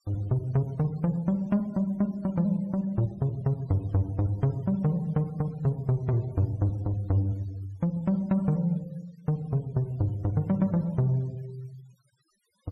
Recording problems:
noise reduction artefacts; signal-to-artefact ratio 27 dB

